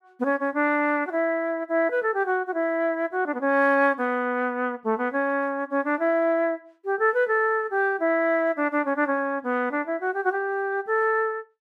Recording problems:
none

